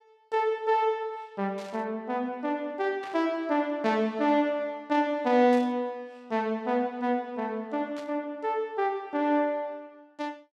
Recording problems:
burst of static; 4 times, first at 1.5 s; peak -13 dB vs average level

